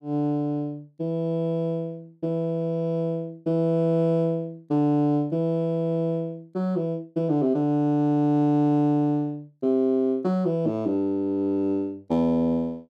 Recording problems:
none

